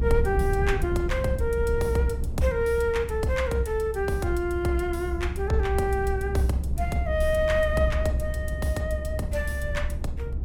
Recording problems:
low-frequency rumble; below 80 Hz, SNR 3 dB

